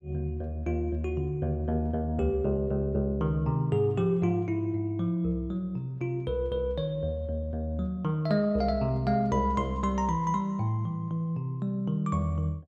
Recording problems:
none

